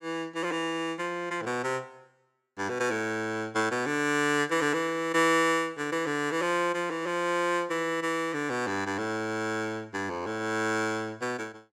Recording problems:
none

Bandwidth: 17 kHz